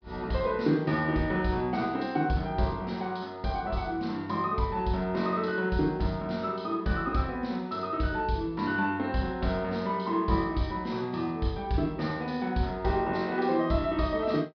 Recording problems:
low-pass filter; nothing above 5.5 kHz

